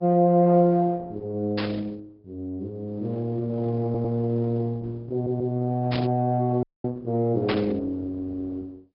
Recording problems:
low-pass filter; nothing above 5.2 kHz
codec artefacts; Opus, log-spectral distance 2 dB
burst of static; at 1.5 s, at 6 s and at 7.5 s; peak -2 dB vs average level
audio stuttering; at 4 s and at 5 s
audio freezing; at 6.5 s

